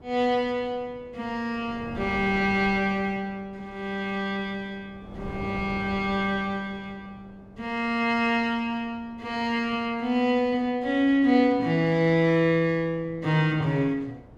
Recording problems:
wind on the microphone; below 450 Hz, SNR 20 dB

